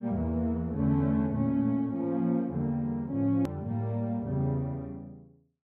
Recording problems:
edit click; at 3.5 s

